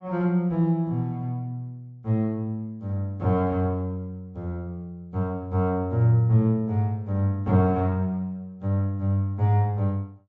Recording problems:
treble cut off; nothing above 8 kHz

